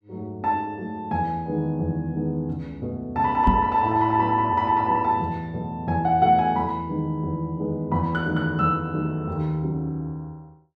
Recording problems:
knock on the microphone; at 3.5 s; peak +6 dB vs average level

